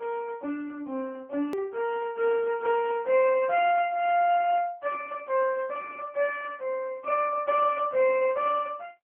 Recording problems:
telephone audio; 220 Hz to 3.2 kHz, AMR-NB
edit click; at 1.5 s

